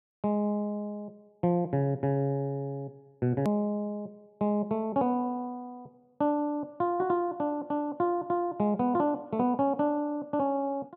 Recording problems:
edit click; at 3.5 s

